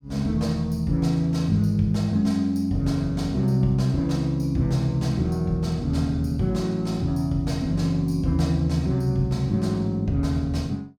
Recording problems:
none

